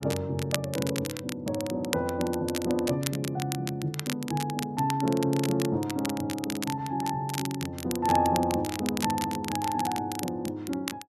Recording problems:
crackle; vinyl, SNR 8 dB

